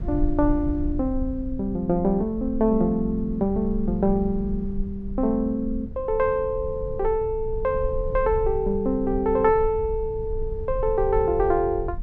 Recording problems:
rumble; below 64 Hz, SNR 10 dB

